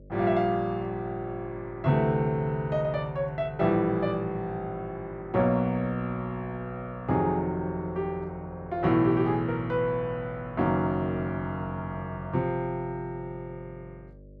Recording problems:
electrical hum; 50 Hz, harmonics up to 600 Hz, SNR 21 dB

